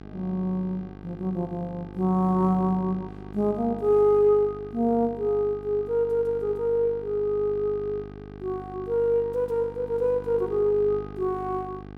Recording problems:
electrical hum; 50 Hz, harmonics up to 1.6 kHz, SNR 15 dB

